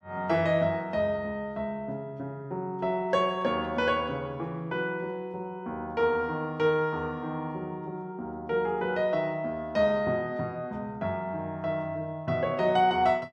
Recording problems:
none

